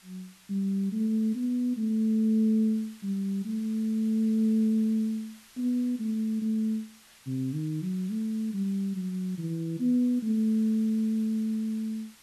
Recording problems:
hiss; slope +2 dB per octave, SNR 25 dB

